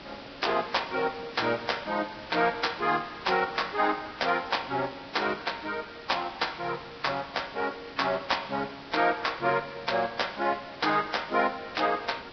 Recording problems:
codec artefacts; Vorbis, log-spectral distance 13 dB, nothing above 5.5 kHz
background hiss; slope -3 dB per octave, SNR 16 dB

